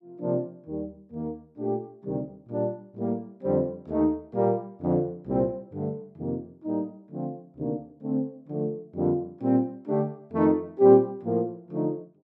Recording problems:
none

